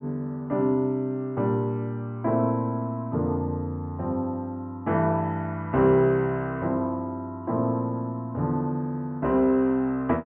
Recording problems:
low-pass filter; nothing above 4 kHz

